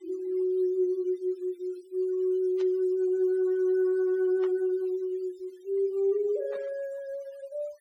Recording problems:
denoising artefacts; signal-to-artefact ratio 28 dB
static burst; at 2.5 s, at 4.5 s and at 6.5 s; peak -14 dB vs average level

